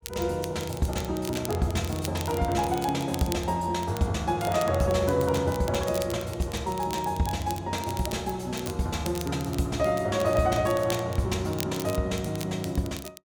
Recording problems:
crackle; vinyl, SNR 14 dB

